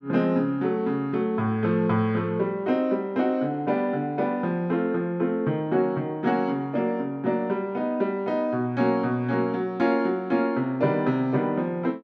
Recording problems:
none

